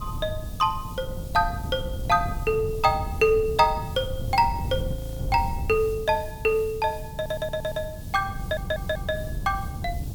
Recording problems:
hiss; SNR 21 dB
wind on the microphone; below 140 Hz, SNR 8 dB
frozen audio; at 5 s
stutter; at 7 s and at 8.5 s

